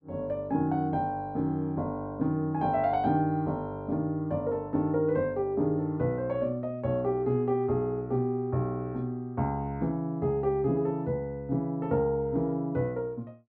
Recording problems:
none

